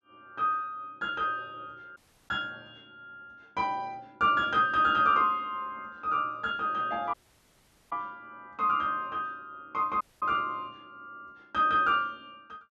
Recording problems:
low-pass filter; nothing above 8 kHz
dropout; at 2 s, at 7 s for 1 s and at 10 s

